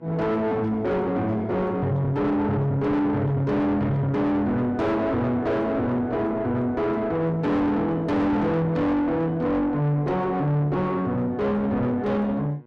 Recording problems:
distortion; soft clipping, signal-to-distortion ratio 5 dB
hum; 60 Hz, harmonics up to 1.6 kHz, SNR 27 dB

